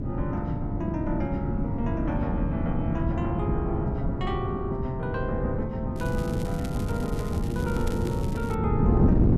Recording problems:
hum; 50 Hz, harmonics up to 450 Hz, SNR 19 dB
wind noise; below 220 Hz, SNR -3 dB
crackle; from 6 to 8.5 s; loose cable, SNR 14 dB

